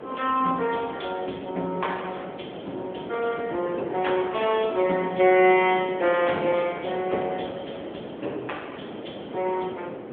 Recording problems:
telephone audio; 240 Hz to 3.4 kHz, AMR-NB
wind on the microphone; below 630 Hz, SNR 11 dB

